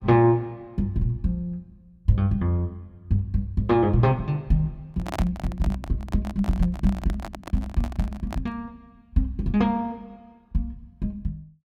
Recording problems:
microphone handling noise; from 5 to 8.5 s; peak -1 dB vs average level

